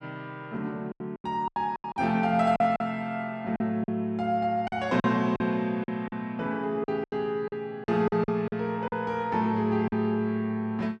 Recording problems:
packet loss; 10% of the sound replaced, filled with silence

